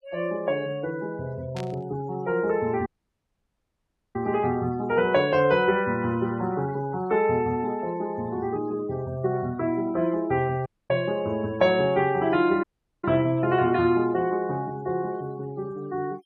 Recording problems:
noise reduction artefacts; signal-to-artefact ratio 22 dB
burst of static; at 1.5 s; peak -10 dB vs average level
audio cutting out; at 3 s for 1.5 s, at 11 s and at 13 s

